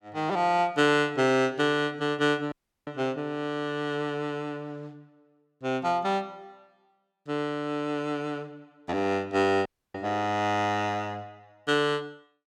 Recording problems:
dropout; at 2.5 s and at 9.5 s

